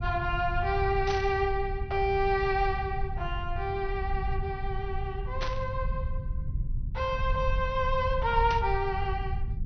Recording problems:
treble missing; nothing above 6.1 kHz
low-frequency rumble; below 88 Hz, SNR 5 dB
burst of static; at 1 s, at 5.5 s and at 8.5 s; peak -2 dB vs average level

